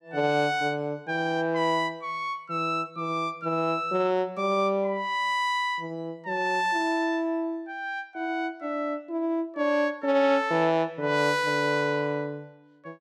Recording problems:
none

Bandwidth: 15.5 kHz